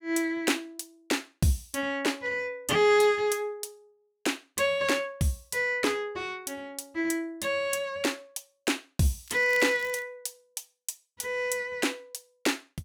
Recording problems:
crackle; at 9.5 s; loose cable, SNR 19 dB

